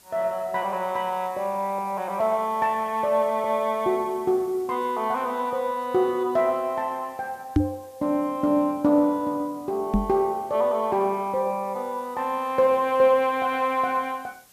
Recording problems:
hiss; slope -1 dB per octave, SNR 27 dB
microphone bump; at 7.5 s and at 10 s; peak +8 dB vs average level

